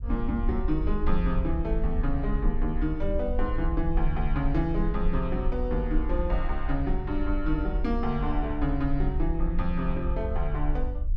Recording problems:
rumble; below 52 Hz, SNR 1 dB

